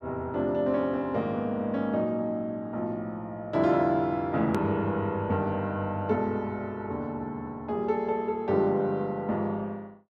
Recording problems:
edit click; at 4.5 s

